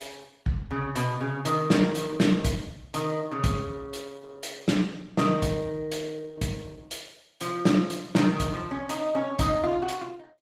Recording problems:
lossy codec; Opus, log-spectral distance 4 dB, nothing above 18.9 kHz

